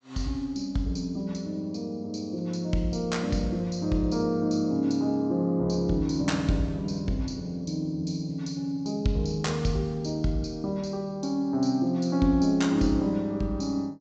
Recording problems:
treble missing; nothing above 8 kHz

